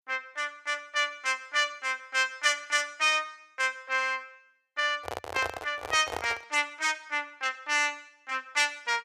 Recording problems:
handling noise; from 5 to 6.5 s; peak -2 dB vs average level

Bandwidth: 14.5 kHz